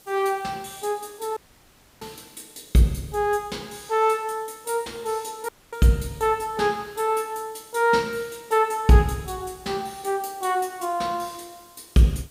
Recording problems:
hiss; SNR 27 dB
audio cutting out; at 1.5 s for 0.5 s and at 5.5 s

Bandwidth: 15.5 kHz